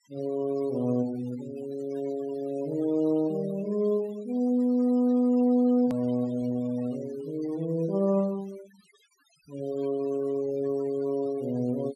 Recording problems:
denoising artefacts; signal-to-artefact ratio 22 dB
edit click; at 6 s

